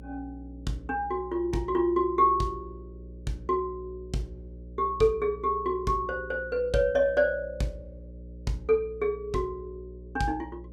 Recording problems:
electrical hum; 60 Hz, harmonics up to 600 Hz, SNR 17 dB

